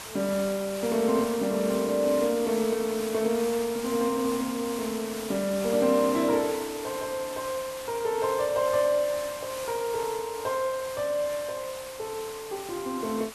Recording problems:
hiss; SNR 11 dB

